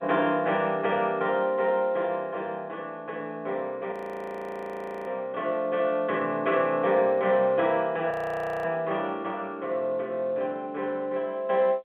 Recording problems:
phone line; 260 Hz to 3.5 kHz, G.711
frozen audio; at 4 s for 1 s and at 8 s for 0.5 s

